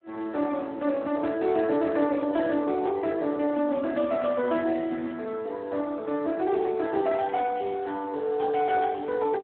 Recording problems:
phone line; 220 Hz to 3 kHz, Speex

